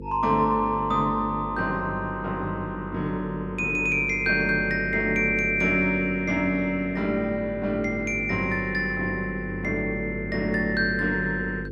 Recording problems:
hum; 50 Hz, harmonics up to 500 Hz, SNR 12 dB

